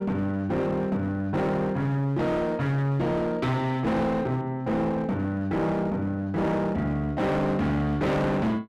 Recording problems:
distorted audio; hard clipping, uneven, signal-to-distortion ratio 8 dB

